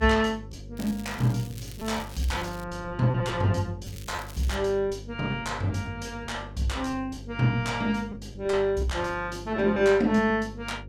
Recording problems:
electrical hum; 50 Hz, harmonics up to 550 Hz, SNR 15 dB
packet loss; 5% of the sound replaced, filled with repeated pitch periods
crackling; from 1 to 2.5 s and at 4 s; loose cable, SNR 19 dB

